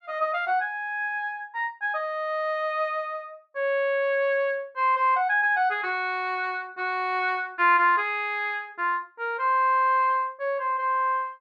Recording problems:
none

